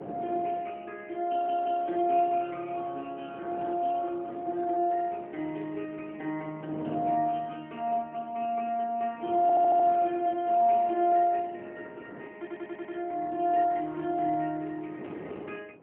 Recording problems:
phone line; 240 Hz to 3.3 kHz, AMR-NB, then MP3
wind on the microphone; below 560 Hz, SNR 18 dB
audio stuttering; at 1.5 s, at 9.5 s and at 12 s

